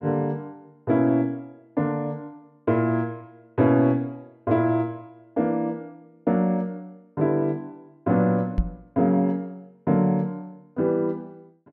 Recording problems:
microphone bump; at 8.5 s; peak +4 dB vs average level

